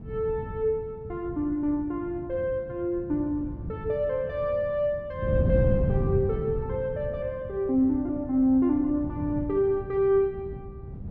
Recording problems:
wind on the microphone; below 180 Hz, SNR 7 dB

